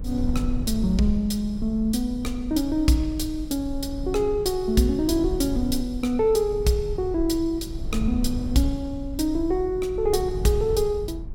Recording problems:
rumble; below 78 Hz, strongest tone 22 Hz, SNR 9 dB

